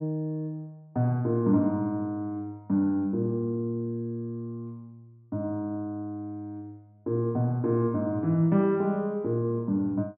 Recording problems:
treble cut off; nothing above 4 kHz

